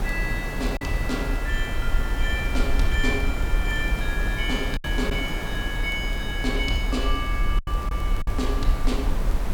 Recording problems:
electrical hum; 60 Hz, harmonics up to 360 Hz, SNR 18 dB
background hiss; slope -6 dB per octave, SNR 4 dB
rumble; below 50 Hz, SNR 0 dB
crackle; vinyl, SNR 29 dB
lost packets; 3% of the sound replaced, filled with silence

